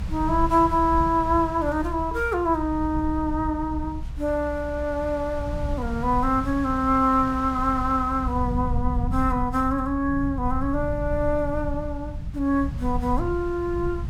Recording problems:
rumble; below 110 Hz, SNR 8 dB
wind on the microphone; below 1.6 kHz, SNR 22 dB

